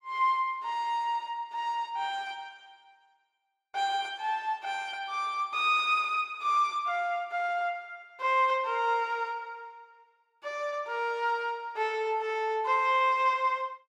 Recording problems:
none

